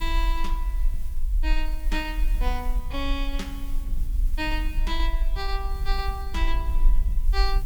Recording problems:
hiss; SNR 16 dB
rumble; below 42 Hz, strongest tone 20 Hz, SNR -4 dB
wind noise; below 88 Hz, SNR 8 dB

